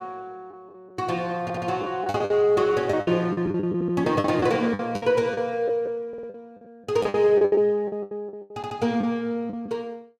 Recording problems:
packet loss; 14% of the sound replaced, filled with the last packet
stutter; 4 times, first at 1.5 s

